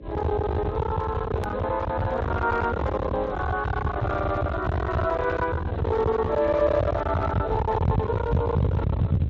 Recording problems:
codec artefacts; Speex, log-spectral distance 2 dB
distorted audio; hard clipping, signal-to-distortion ratio 7 dB
hum; 60 Hz, harmonics up to 600 Hz, SNR 19 dB
low-frequency rumble; below 600 Hz, SNR 3 dB
click at an edit; at 1.5 s

